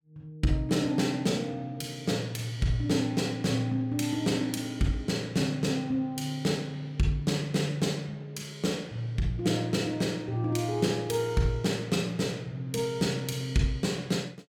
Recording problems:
none

